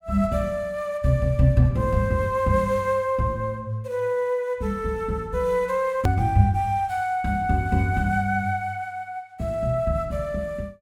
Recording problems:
click at an edit; at 6 s

